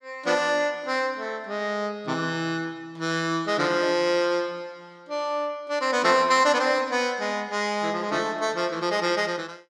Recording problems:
none

